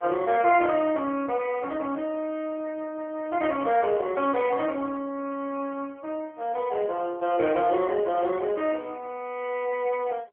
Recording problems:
phone line; 280 Hz to 3.2 kHz, AMR-NB

